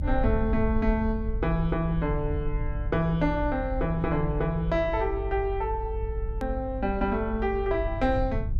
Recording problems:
electrical hum; 50 Hz, harmonics up to 600 Hz, SNR 17 dB
rumble; below 62 Hz, SNR 5 dB
edit click; at 6.5 s

